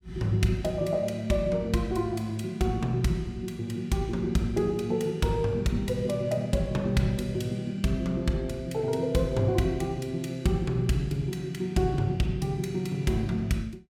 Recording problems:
none

